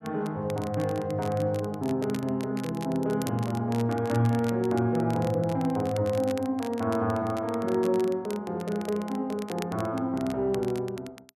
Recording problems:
crackle; vinyl, SNR 18 dB

